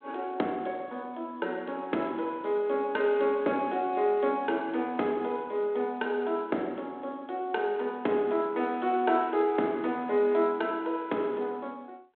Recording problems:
telephone audio; 220 Hz to 3.7 kHz, G.726

